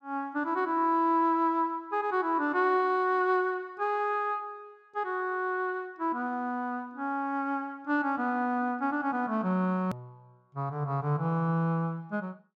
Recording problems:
hard cut with a click; at 10 s

